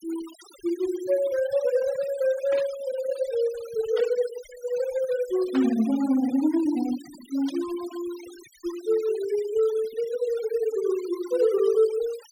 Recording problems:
noise reduction artefacts; signal-to-artefact ratio 18 dB
burst of static; 4 times, first at 2.5 s; peak -8 dB vs average level

